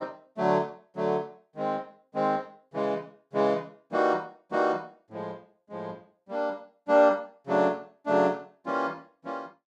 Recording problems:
none

